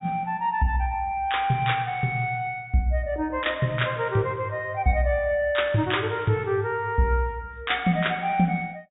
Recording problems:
low-pass filter; nothing above 4 kHz

